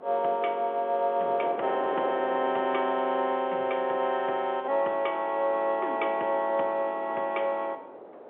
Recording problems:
telephone audio; 300 Hz to 3.5 kHz, G.711
wind noise; below 780 Hz, SNR 14 dB

